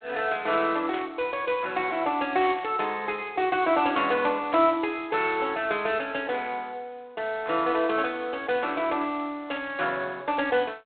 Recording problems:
phone line; 300 Hz to 3.9 kHz, G.726
burst of static; 4 times, first at 1 s; peak -8 dB vs average level

